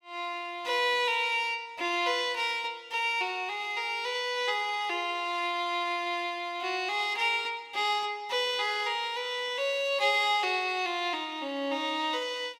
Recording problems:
none

